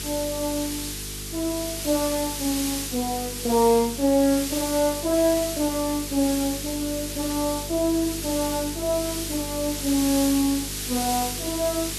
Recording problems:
hum; 50 Hz, harmonics up to 450 Hz, SNR 14 dB
background hiss; slope +3 dB per octave, SNR 5 dB

